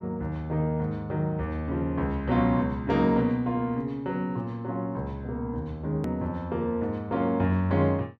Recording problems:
edit click; at 6 s

